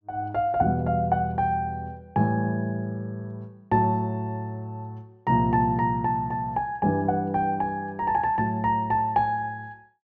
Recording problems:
treble cut off; nothing above 7 kHz

